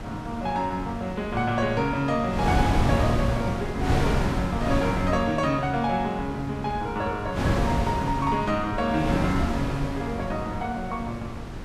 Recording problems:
wind on the microphone; below 440 Hz, SNR 3 dB

